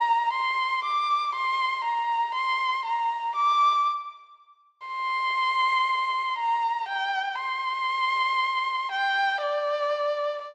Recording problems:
none

